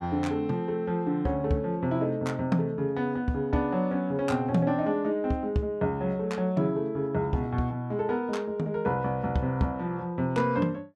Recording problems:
none

